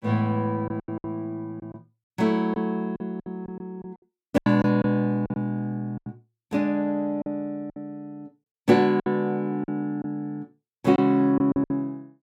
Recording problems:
lost packets; 10% of the sound replaced, filled with silence

